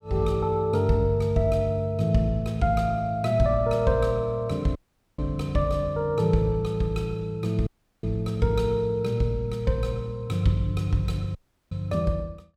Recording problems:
dropout; at 5 s, at 7.5 s and at 11 s

